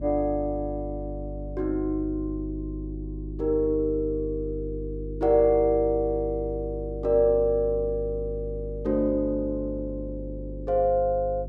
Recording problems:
hum; 50 Hz, harmonics up to 400 Hz, SNR 10 dB

